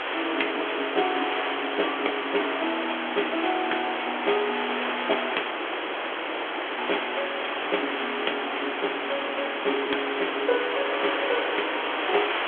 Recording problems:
telephone audio; 280 Hz to 3.4 kHz, G.726
background hiss; SNR 0 dB
audio cutting out; at 5.5 s for 1.5 s

